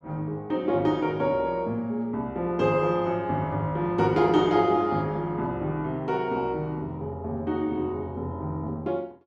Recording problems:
none

